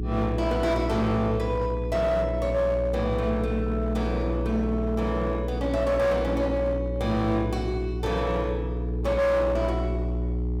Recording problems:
distorted audio; hard clipping, uneven, signal-to-distortion ratio 12 dB
electrical hum; 60 Hz, harmonics up to 420 Hz, SNR 4 dB

